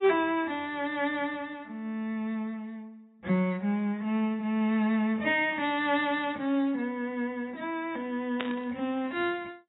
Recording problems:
codec artefacts; AAC, log-spectral distance 2 dB, nothing above 3.6 kHz
static burst; at 8.5 s; peak -2 dB vs average level

